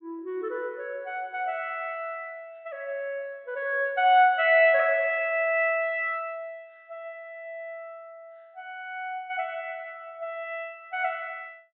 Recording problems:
treble cut off; nothing above 4 kHz

